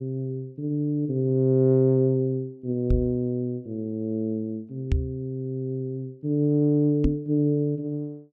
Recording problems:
microphone bump; at 3 s, at 5 s and at 7 s; peak +4 dB vs average level

